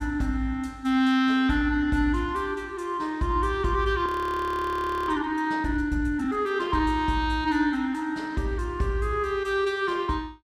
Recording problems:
frozen audio; at 4 s for 1 s

